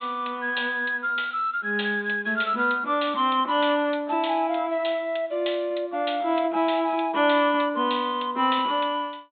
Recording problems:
treble missing; nothing above 4 kHz

